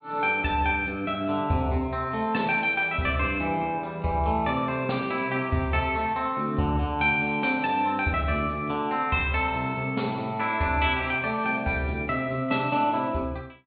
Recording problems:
low-pass filter; nothing above 4.4 kHz

